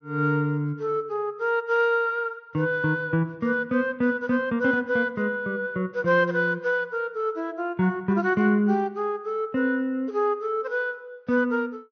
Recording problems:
low-pass filter; nothing above 6.1 kHz

